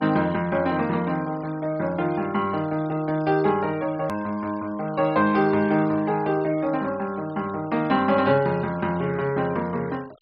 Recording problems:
treble cut off; nothing above 5.5 kHz
noise reduction artefacts; signal-to-artefact ratio 24 dB
hard cut with a click; at 4 s

